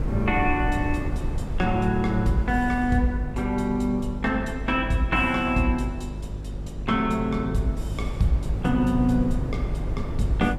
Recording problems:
mains hum; 50 Hz, harmonics up to 550 Hz, SNR 10 dB
wind on the microphone; below 130 Hz, SNR 9 dB

